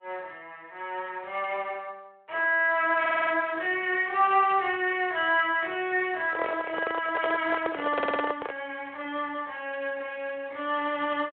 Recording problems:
phone line; 340 Hz to 3.5 kHz, Speex
stutter; at 3 s and at 8 s
handling noise; from 6.5 to 8.5 s; peak +1 dB vs average level

